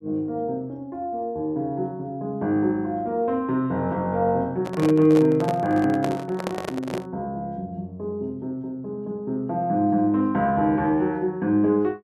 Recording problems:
handling noise; from 4.5 to 7 s; peak -1 dB vs average level

